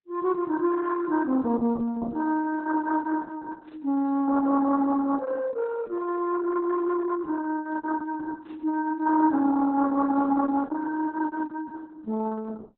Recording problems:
lossy compression; Opus, log-spectral distance 3 dB

